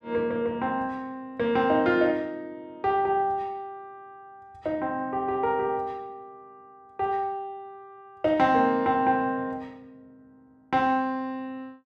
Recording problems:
none

